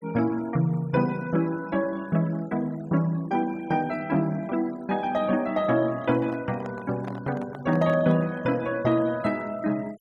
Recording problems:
denoising artefacts; signal-to-artefact ratio 23 dB
handling noise; from 6 to 8.5 s; peak -8 dB vs average level

